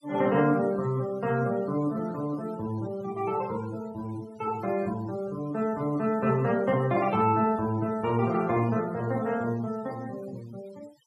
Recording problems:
noise reduction artefacts; signal-to-artefact ratio 22 dB

